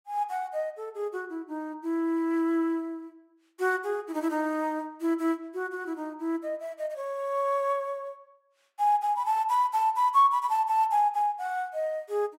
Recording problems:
none

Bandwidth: 16 kHz